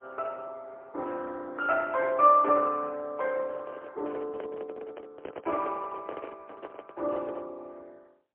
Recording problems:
phone line; 260 Hz to 3.6 kHz, AMR-NB, then MP3
microphone handling noise; from 3.5 to 7.5 s; peak -4 dB vs average level

